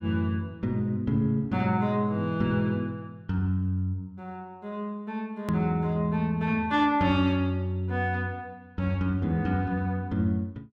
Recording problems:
edit click; at 5.5 s

